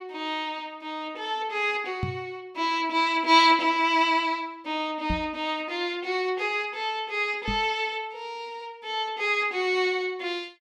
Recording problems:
microphone bump; at 2 s, at 5 s and at 7.5 s; peak 0 dB vs average level

